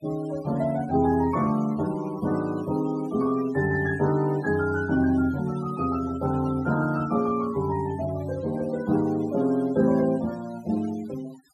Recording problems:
denoising artefacts; signal-to-artefact ratio 20 dB

